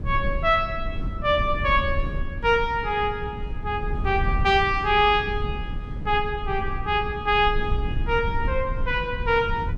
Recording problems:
wind on the microphone; below 88 Hz, SNR 8 dB

